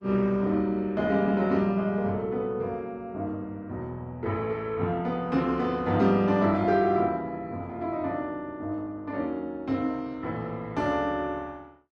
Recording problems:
lossy compression; Opus, log-spectral distance 2 dB

